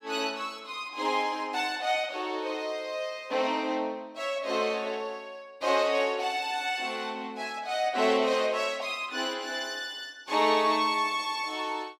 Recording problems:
none

